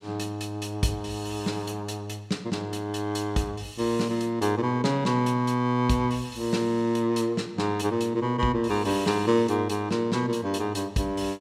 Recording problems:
none

